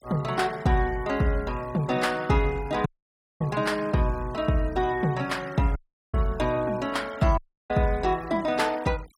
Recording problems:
noise reduction artefacts; signal-to-artefact ratio 23 dB
audio cutting out; at 3 s for 0.5 s, at 6 s and at 7.5 s

